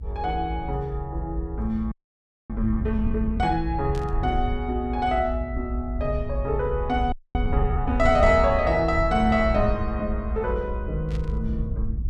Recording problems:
rumble; below 72 Hz, SNR 5 dB
audio freezing; at 2 s for 0.5 s and at 7 s
burst of static; at 4 s and at 11 s; peak -14 dB vs average level

